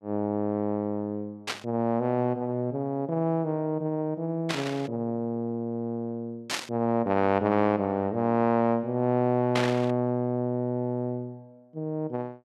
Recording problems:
static burst; 4 times, first at 1.5 s; peak +3 dB vs average level

